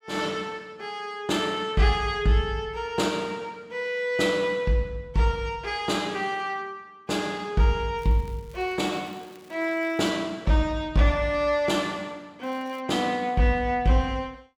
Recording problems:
crackling; from 8 to 10 s and at 12 s; loose cable, SNR 29 dB

